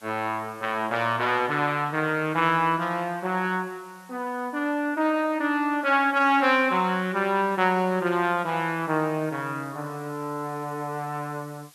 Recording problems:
background hiss; slope +1 dB per octave, SNR 27 dB

